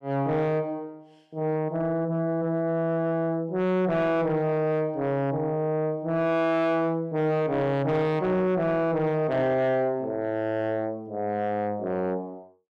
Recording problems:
distorted audio; soft clipping, signal-to-distortion ratio 8 dB

